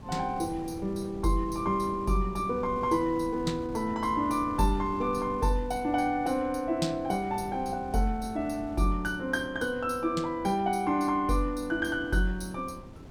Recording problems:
wind noise; below 330 Hz, SNR 16 dB

